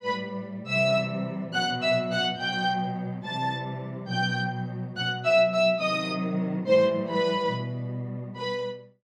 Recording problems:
none

